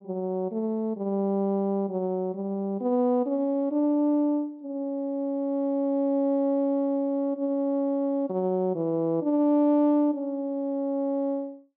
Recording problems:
low-pass filter; nothing above 5.5 kHz

